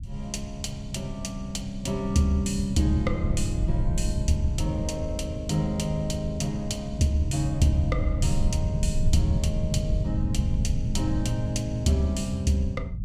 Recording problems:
low-frequency rumble; below 120 Hz, SNR 3 dB

